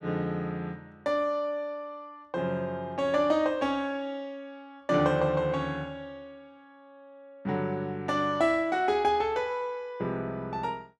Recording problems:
none

